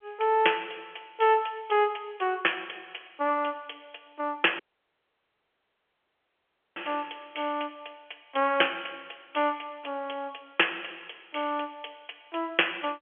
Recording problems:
telephone audio; 300 Hz to 3.3 kHz, G.711
audio cutting out; at 4.5 s for 2 s

